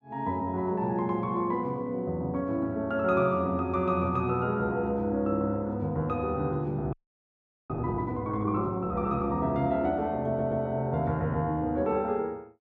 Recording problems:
audio freezing; at 7 s for 1 s
audio stuttering; at 10 s

